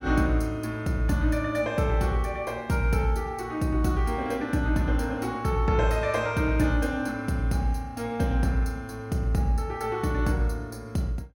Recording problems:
none

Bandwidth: 18 kHz